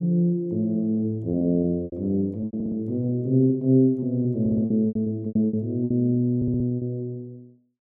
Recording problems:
lost packets; 11% of the sound replaced, filled with repeated pitch periods
audio stuttering; at 2.5 s, at 4.5 s and at 6.5 s

